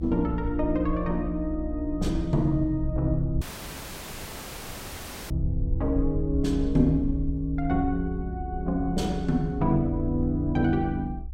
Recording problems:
low-frequency rumble; below 64 Hz, SNR 7 dB
audio cutting out; at 3.5 s for 2 s

